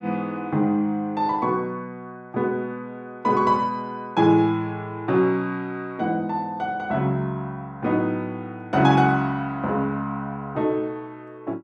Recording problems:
none

